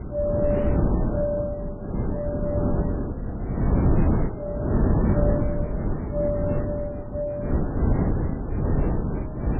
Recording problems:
lossy compression; AAC, then MP3, log-spectral distance 2 dB
wind on the microphone; below 280 Hz, SNR -5 dB

